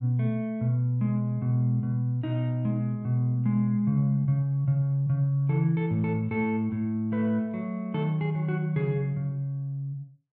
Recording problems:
none

